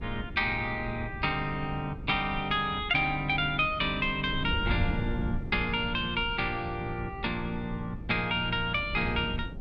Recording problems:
wind noise; below 160 Hz, SNR 9 dB

